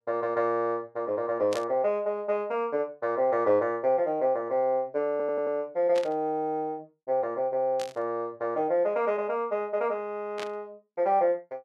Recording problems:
static burst; 4 times, first at 1.5 s; peak -6 dB vs average level
audio stuttering; at 5 s

